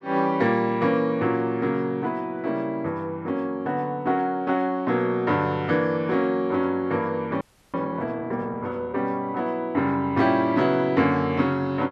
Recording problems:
frozen audio; at 7.5 s

